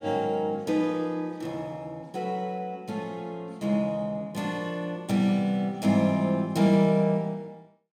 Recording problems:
none

